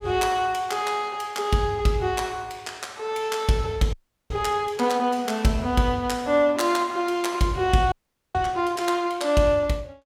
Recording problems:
audio freezing; at 4 s and at 8 s

